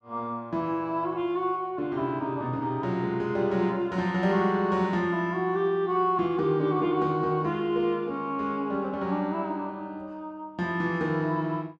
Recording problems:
none

